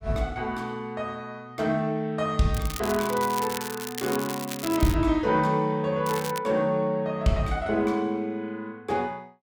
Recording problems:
crackle; from 2.5 to 4 s, at 4 s and at 6 s; loose cable, SNR 10 dB

